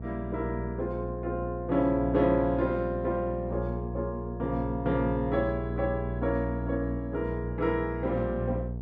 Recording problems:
hum; 60 Hz, harmonics up to 660 Hz, SNR 5 dB

